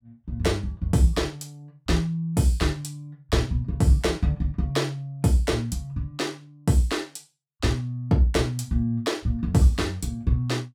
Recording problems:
none

